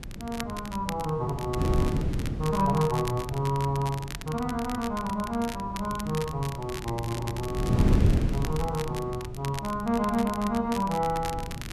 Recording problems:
wind on the microphone; below 210 Hz, SNR 3 dB
crackling; vinyl, SNR 12 dB

